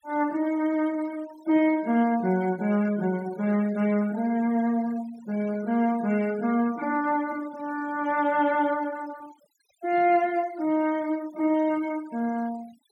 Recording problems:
noise reduction artefacts; signal-to-artefact ratio 22 dB

